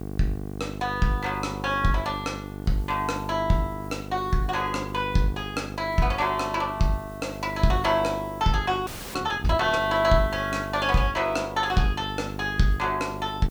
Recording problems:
hum; 50 Hz, harmonics up to 1.1 kHz, SNR 10 dB
background hiss; slope +1 dB per octave, SNR 27 dB
frozen audio; at 9 s

